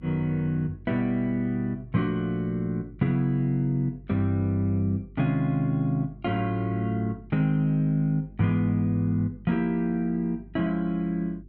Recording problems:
hum; 50 Hz, harmonics up to 400 Hz, SNR 22 dB

